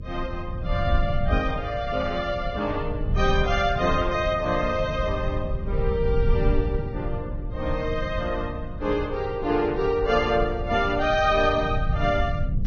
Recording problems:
lossy compression; Vorbis, log-spectral distance 2 dB, nothing above 6.2 kHz
electrical hum; 50 Hz, harmonics up to 550 Hz, SNR 23 dB
rumble; below 98 Hz, SNR 5 dB

